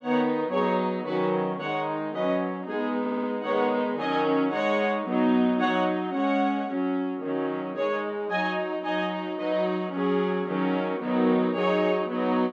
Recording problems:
stutter; at 3 s

